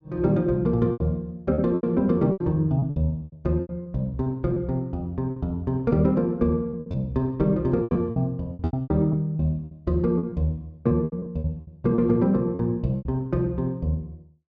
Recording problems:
lost packets; 12% of the sound replaced, filled with repeated pitch periods

